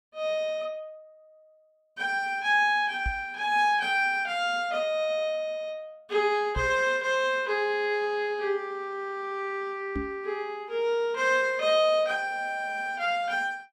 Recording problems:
microphone bump; at 3 s, at 6.5 s and at 10 s; peak -2 dB vs average level

